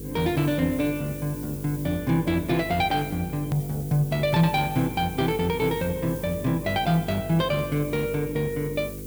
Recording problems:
hum; 50 Hz, harmonics up to 500 Hz, SNR 12 dB
background hiss; SNR 16 dB
hard cut with a click; at 3.5 s

